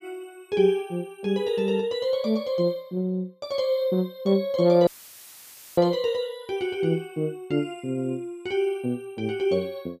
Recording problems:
dropout; at 5 s for 1 s; filled with static

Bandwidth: 15 kHz